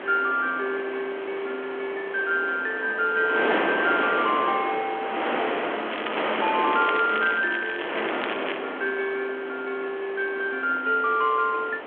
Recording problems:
phone line; 280 Hz to 3.9 kHz, G.726
wind on the microphone; below 1.8 kHz, SNR 4 dB
crackle; from 6 to 8.5 s; loose cable, SNR 10 dB

